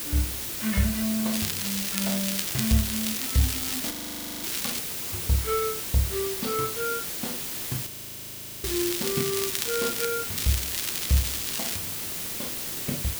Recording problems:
background hiss; SNR 0 dB
crackle; from 1.5 to 5 s, from 8.5 to 10 s and from 10 to 12 s; loose cable, SNR 1 dB
frozen audio; at 4 s for 0.5 s and at 8 s for 1 s

